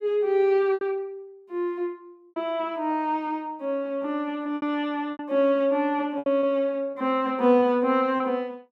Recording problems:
lost packets; 6% of the sound replaced, filled with repeated pitch periods

